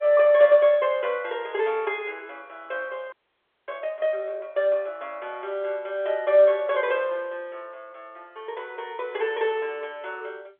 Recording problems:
phone line; 320 Hz to 3.4 kHz, G.711
frozen audio; at 3 s for 0.5 s

